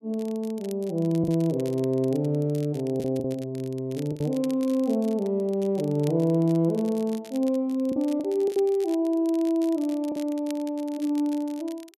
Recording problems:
crackle; vinyl, SNR 23 dB
packet loss; 3% of the sound replaced, filled with the last packet

